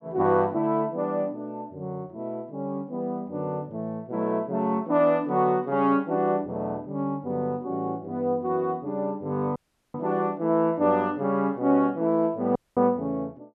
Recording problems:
audio cutting out; at 9.5 s and at 13 s

